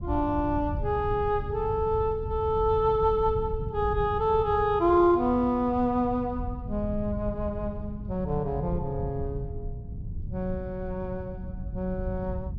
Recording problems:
wind on the microphone; below 120 Hz, SNR 9 dB

